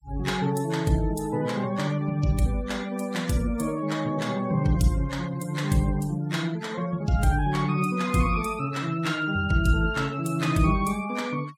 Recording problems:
denoising artefacts; signal-to-artefact ratio 20 dB

